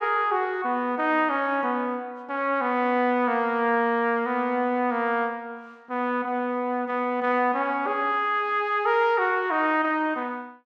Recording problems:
none

